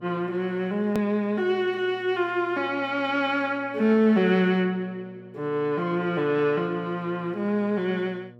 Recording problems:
mains hum; 60 Hz, harmonics up to 1.1 kHz, SNR 24 dB
hard cut with a click; at 1 s

